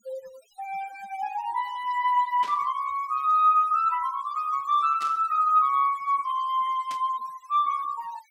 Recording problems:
denoising artefacts; signal-to-artefact ratio 23 dB
burst of static; at 2.5 s, at 5 s and at 7 s; peak -11 dB vs average level

